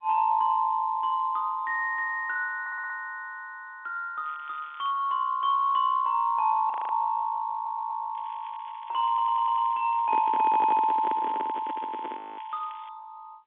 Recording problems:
telephone audio; 260 Hz to 3.5 kHz, G.711
audio stuttering; 4 times, first at 2.5 s
crackling; at 4 s and from 8 to 13 s; loose cable, SNR 27 dB
frozen audio; at 6.5 s and at 12 s
handling noise; from 10 to 12 s; peak -7 dB vs average level

